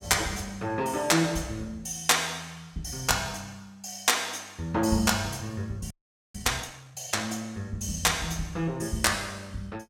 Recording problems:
frozen audio; at 6 s

